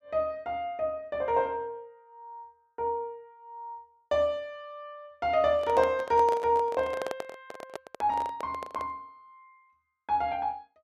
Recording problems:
microphone handling noise; from 5.5 to 9 s; peak -2 dB vs average level

